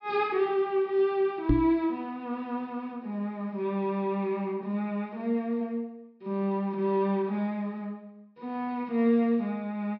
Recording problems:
low-pass filter; nothing above 5.5 kHz
microphone bump; at 1.5 s; peak +8 dB vs average level

